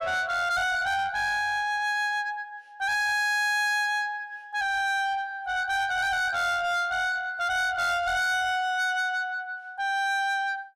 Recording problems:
distortion; soft clipping, signal-to-distortion ratio 8 dB

